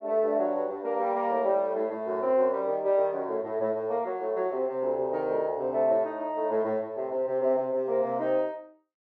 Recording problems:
none

